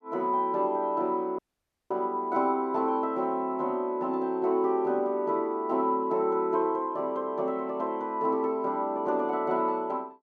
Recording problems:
dropout; at 1.5 s for 0.5 s

